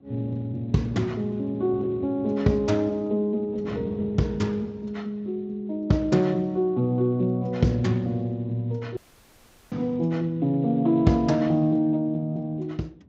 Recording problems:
lossy compression; Speex, log-spectral distance 2 dB, nothing above 7.3 kHz
wind on the microphone; below 320 Hz, SNR 18 dB
audio cutting out; at 9 s for 1 s

